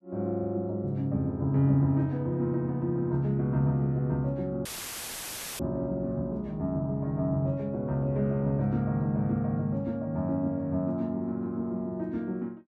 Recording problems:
audio cutting out; at 4.5 s for 1 s; filled with static

